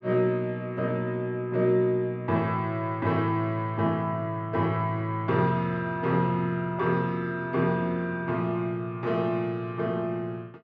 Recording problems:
none

